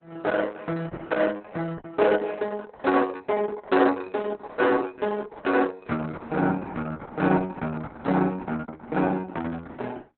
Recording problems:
lossy compression; Opus, log-spectral distance 4 dB, nothing above 4 kHz
lost packets; 4% of the sound replaced, filled with repeated pitch periods

